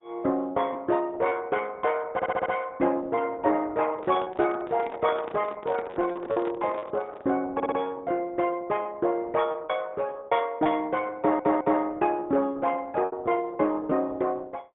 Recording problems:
treble cut off; nothing above 3.4 kHz
codec artefacts; Opus, log-spectral distance 3 dB
packet loss; 7% of the sound replaced, filled with repeated pitch periods
stutter; at 2 s, at 7.5 s and at 11 s
microphone handling noise; from 4 to 7.5 s; peak -7 dB vs average level

